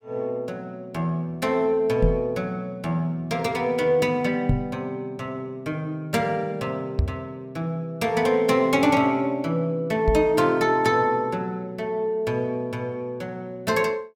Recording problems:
knock on the microphone; 4 times, first at 2 s; peak +6 dB vs average level

